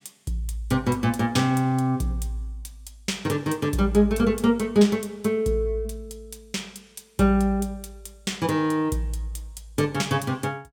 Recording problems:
none

